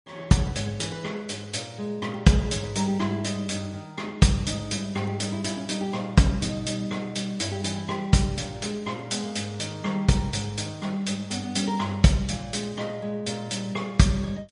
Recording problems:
lossy compression; MP3, log-spectral distance 3 dB, nothing above 10.4 kHz

